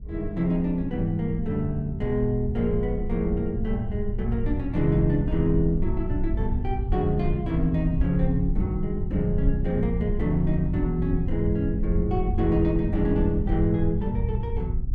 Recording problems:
low-frequency rumble; below 78 Hz, SNR 4 dB

